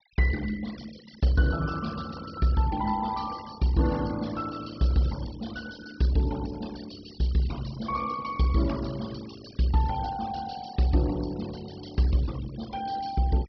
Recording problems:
low-pass filter; nothing above 5.5 kHz
noise reduction artefacts; signal-to-artefact ratio 17 dB

